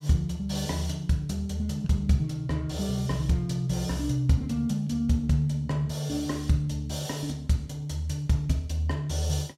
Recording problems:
none

